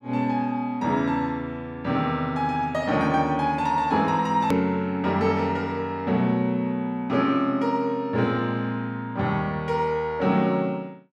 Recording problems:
edit click; at 4.5 s

